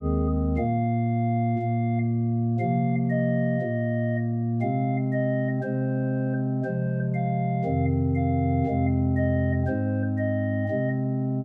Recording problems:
none

